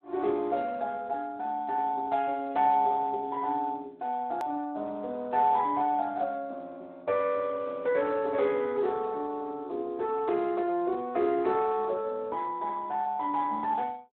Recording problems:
telephone audio; 260 Hz to 3.6 kHz, Speex
click at an edit; at 4.5 s

